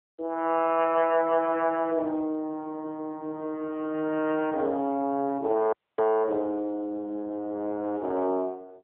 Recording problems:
phone line; 320 Hz to 3.1 kHz, AMR-NB
audio cutting out; at 5.5 s

